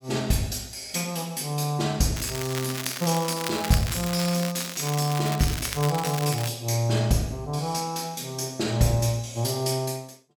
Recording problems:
crackle; from 2 to 6.5 s; loose cable, SNR 8 dB

